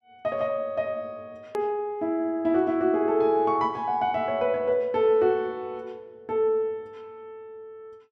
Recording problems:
click at an edit; at 1.5 s

